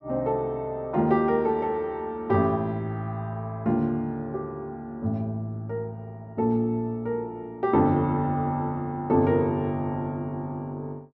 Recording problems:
none

